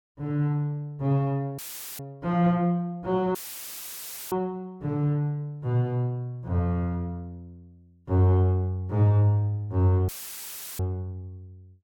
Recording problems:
dropout; at 1.5 s, at 3.5 s for 1 s and at 10 s for 0.5 s; filled with static

